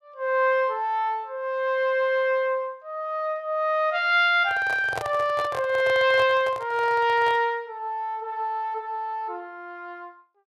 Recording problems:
microphone handling noise; from 4.5 to 7.5 s; peak -3 dB vs average level

